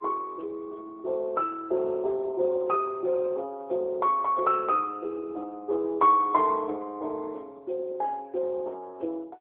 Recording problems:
telephone audio; 320 Hz to 2.6 kHz, AMR-NB

